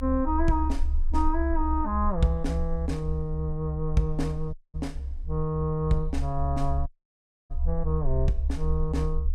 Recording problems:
rumble; below 68 Hz, SNR 2 dB
audio cutting out; at 4.5 s and at 7 s for 0.5 s

